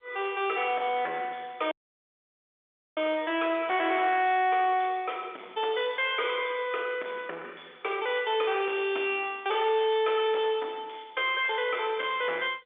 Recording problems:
phone line; 280 Hz to 3.6 kHz, G.711
distorted audio; soft clipping, signal-to-distortion ratio 9 dB
audio cutting out; at 1.5 s for 1.5 s

